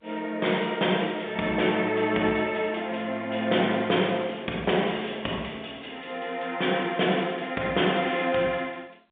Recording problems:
phone line; 280 Hz to 3.6 kHz, G.711

